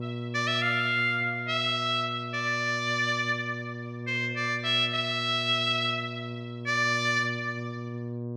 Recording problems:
hum; 60 Hz, harmonics up to 600 Hz, SNR 10 dB

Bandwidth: 14.5 kHz